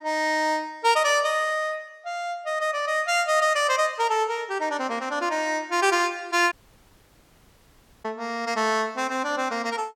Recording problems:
dropout; at 6.5 s for 1.5 s

